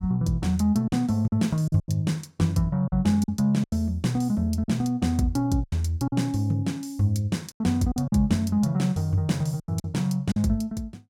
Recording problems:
packet loss; 8% of the sound replaced, filled with silence

